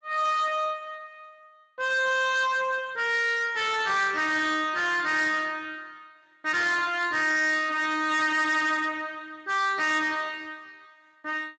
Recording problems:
lossy compression; Speex, log-spectral distance 5 dB, nothing above 7.8 kHz
distorted audio; soft clipping, signal-to-distortion ratio 11 dB

